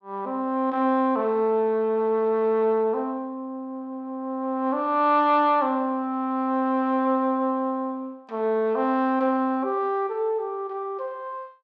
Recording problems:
none

